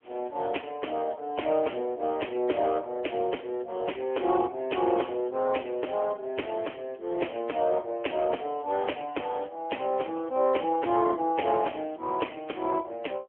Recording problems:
phone line; 280 Hz to 3.3 kHz, AMR-NB

